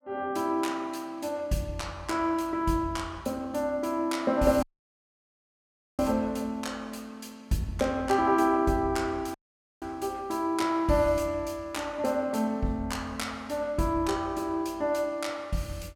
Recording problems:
audio cutting out; at 4.5 s for 1.5 s and at 9.5 s

